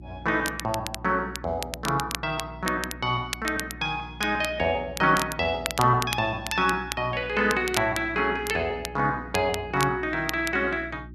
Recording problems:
hum; 60 Hz, harmonics up to 360 Hz, SNR 17 dB
crackling; vinyl, SNR 10 dB

